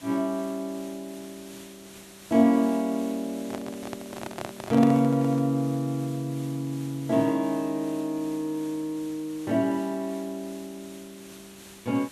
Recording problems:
hiss; slope -1 dB per octave, SNR 20 dB
handling noise; from 3.5 to 5.5 s; peak -1 dB vs average level

